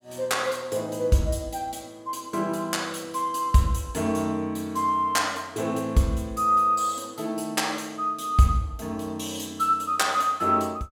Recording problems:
none

